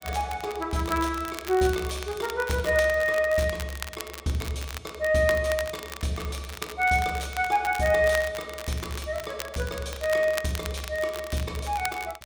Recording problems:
crackle; vinyl, SNR 12 dB

